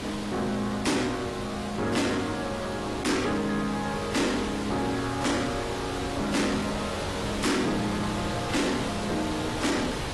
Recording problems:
lossy codec; AAC, log-spectral distance 6 dB, nothing above 11.3 kHz
distorted audio; soft clipping, signal-to-distortion ratio 6 dB
background hiss; slope -4 dB per octave, SNR 5 dB

